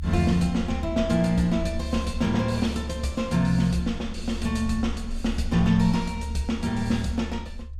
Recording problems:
low-frequency rumble; below 72 Hz, strongest tone 72 Hz, SNR 9 dB

